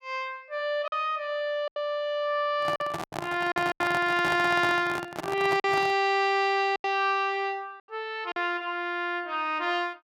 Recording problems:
packet loss; 5% of the sound replaced, filled with silence
handling noise; from 2.5 to 6 s; peak -2 dB vs average level

